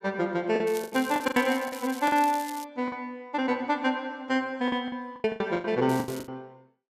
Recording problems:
lost packets; 13% of the sound replaced, filled with the last packet
crackling; from 0.5 to 2.5 s and at 6 s; loose cable, SNR 15 dB

